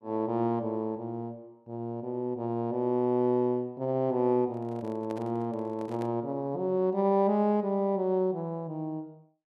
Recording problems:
handling noise; from 4.5 to 6 s; peak -9 dB vs average level

